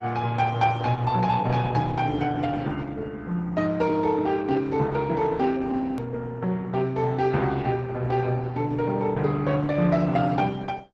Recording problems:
lossy codec; Opus, log-spectral distance 3 dB
click at an edit; at 6 s

